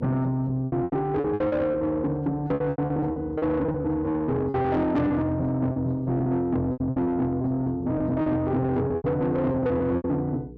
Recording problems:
distortion; soft clipping, signal-to-distortion ratio 11 dB
hum; 60 Hz, harmonics up to 480 Hz, SNR 20 dB
packet loss; 14% of the sound replaced, filled with repeated pitch periods

